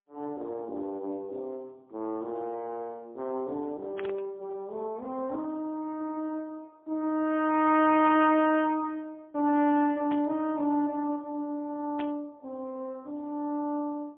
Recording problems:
phone line; 240 Hz to 3.4 kHz, AMR-NB, then MP3
burst of static; 4 times, first at 4 s; peak -7 dB vs average level

